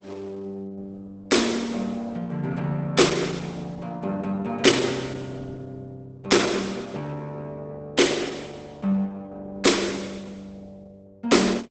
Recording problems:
lossy codec; Opus, log-spectral distance 4 dB, nothing above 8 kHz

